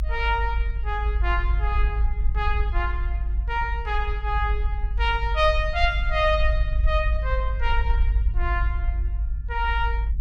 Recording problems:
rumble; below 54 Hz, strongest tone 52 Hz, SNR 0 dB

